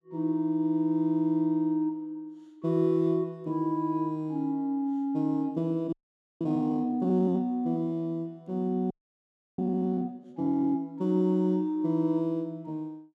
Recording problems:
audio freezing; at 6 s and at 9 s for 0.5 s

